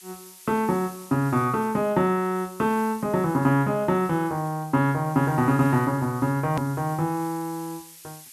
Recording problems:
background hiss; slope +5 dB per octave, SNR 21 dB
edit click; at 6.5 s

